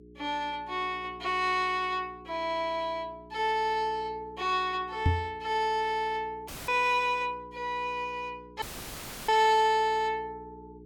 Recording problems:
hum; 60 Hz, harmonics up to 420 Hz, SNR 21 dB
microphone bump; at 5 s; peak +6 dB vs average level
audio cutting out; at 6.5 s and at 8.5 s for 0.5 s; filled with static

